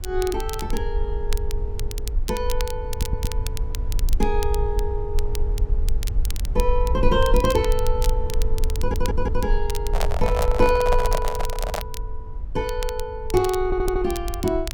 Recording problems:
rumble; below 52 Hz, strongest tone 22 Hz, SNR 2 dB
crackle; vinyl, SNR 12 dB
audio stuttering; at 3 s, at 9 s and at 14 s
microphone handling noise; from 10 to 12 s; peak +3 dB vs average level

